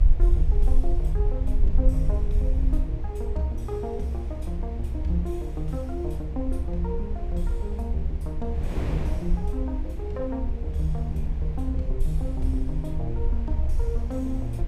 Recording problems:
hum; 60 Hz, harmonics up to 720 Hz, SNR 28 dB
low-frequency rumble; below 64 Hz, SNR -4 dB
wind on the microphone; below 400 Hz, SNR 9 dB

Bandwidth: 15.5 kHz